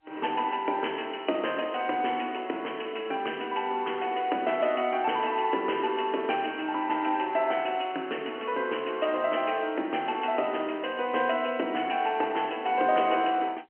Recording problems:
phone line; 260 Hz to 3.1 kHz, G.711

